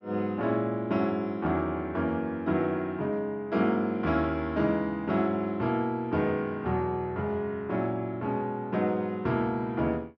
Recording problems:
none

